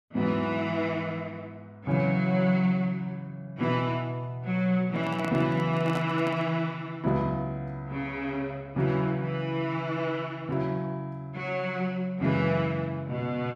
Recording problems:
handling noise; from 5 to 6.5 s; peak -2 dB vs average level

